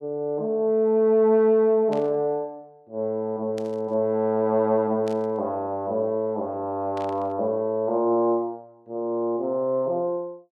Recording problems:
burst of static; 4 times, first at 2 s; peak -14 dB vs average level

